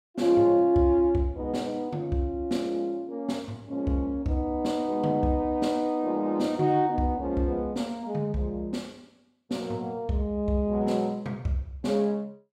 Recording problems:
none

